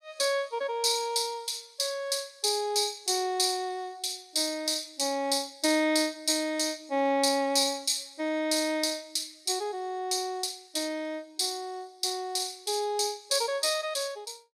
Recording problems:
none

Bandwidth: 15.5 kHz